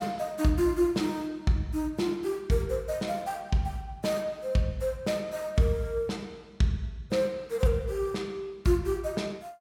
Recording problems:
none

